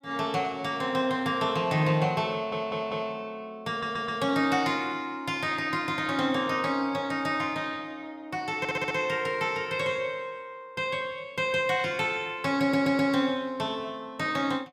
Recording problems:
stutter; 4 times, first at 2.5 s

